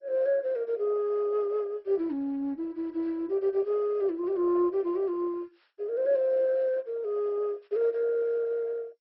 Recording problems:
codec artefacts; MP2, log-spectral distance 2 dB, nothing above 5.5 kHz

